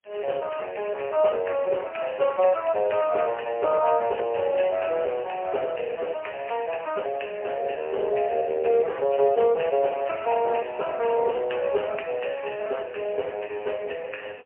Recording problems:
phone line; 340 Hz to 3.1 kHz, AMR-NB, then MP3

